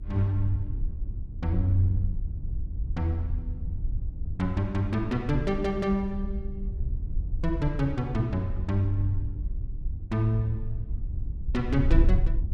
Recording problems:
hum; 60 Hz, harmonics up to 360 Hz, SNR 20 dB
wind on the microphone; below 66 Hz, SNR 4 dB

